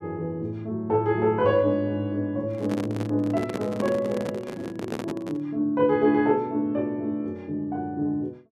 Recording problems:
handling noise; from 2.5 to 5.5 s; peak -1 dB vs average level

